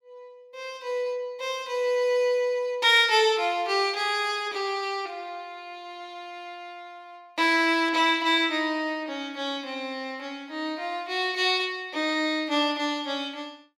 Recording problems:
none

